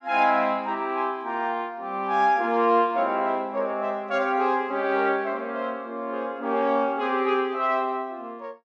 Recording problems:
none

